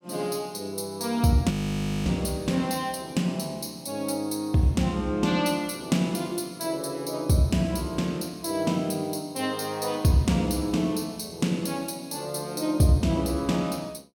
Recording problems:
frozen audio; at 1.5 s for 0.5 s

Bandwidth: 17.5 kHz